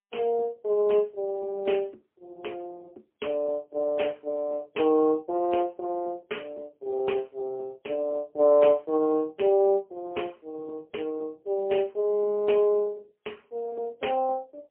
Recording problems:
telephone audio; 280 Hz to 3.2 kHz, AMR-NB, then MP3

